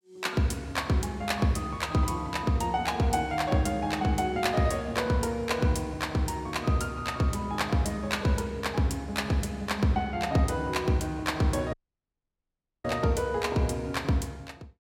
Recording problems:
audio cutting out; at 12 s for 1 s

